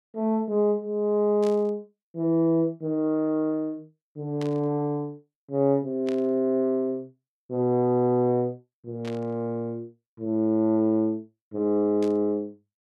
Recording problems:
static burst; 5 times, first at 1.5 s; peak -11 dB vs average level

